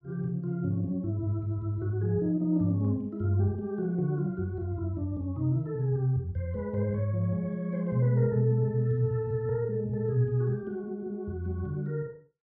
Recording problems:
none

